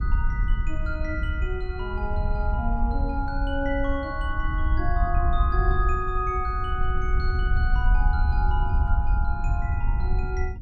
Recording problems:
wind noise; below 68 Hz, SNR -4 dB

